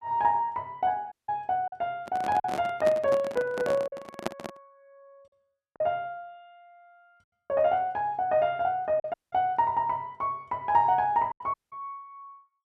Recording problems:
lost packets; 3% of the sound replaced, filled with silence
audio cutting out; at 1 s, at 9 s and at 12 s
microphone handling noise; from 2 to 4.5 s; peak +1 dB vs average level

